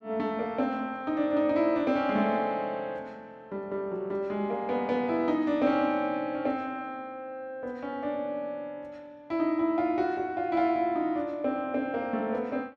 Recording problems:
none

